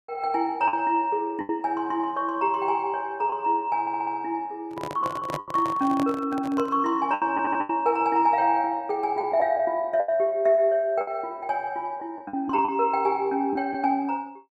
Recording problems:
packet loss; 6% of the sound replaced, filled with the last packet
stutter; at 4 s and at 7.5 s
handling noise; from 4.5 to 7 s; peak -3 dB vs average level

